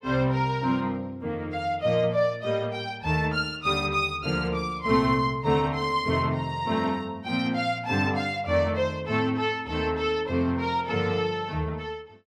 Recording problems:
none

